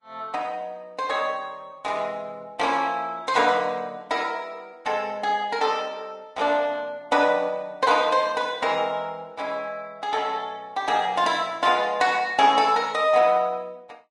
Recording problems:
codec artefacts; Vorbis, log-spectral distance 2 dB

